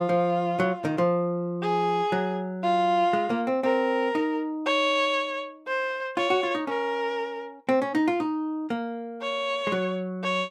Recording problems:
none

